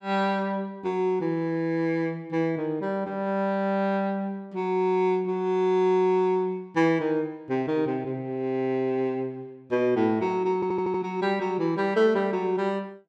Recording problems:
audio stuttering; at 11 s

